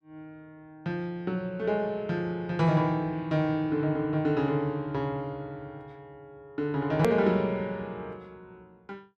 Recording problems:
edit click; at 7 s

